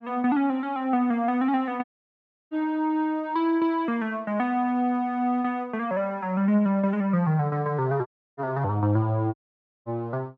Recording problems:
dropout; at 2 s for 0.5 s, at 8 s and at 9.5 s for 0.5 s

